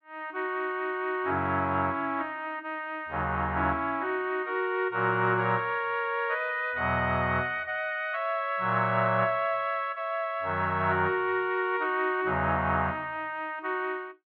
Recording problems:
none

